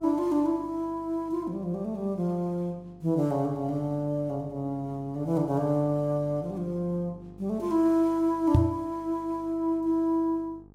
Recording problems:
hum; 50 Hz, harmonics up to 900 Hz, SNR 23 dB
microphone bump; at 8.5 s; peak +9 dB vs average level

